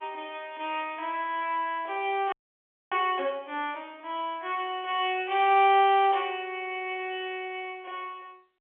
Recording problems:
phone line; 280 Hz to 3.4 kHz, G.711
frozen audio; at 2.5 s for 0.5 s

